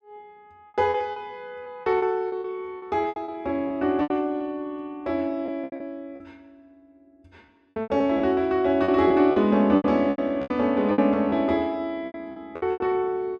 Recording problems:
lost packets; 14% of the sound replaced, filled with repeated pitch periods

